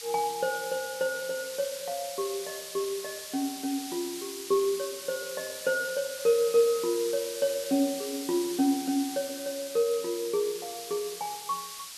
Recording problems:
hiss; slope +4 dB per octave, SNR 8 dB

